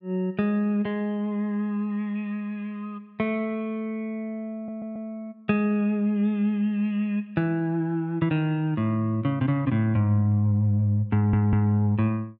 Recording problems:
audio stuttering; at 4.5 s and at 11 s

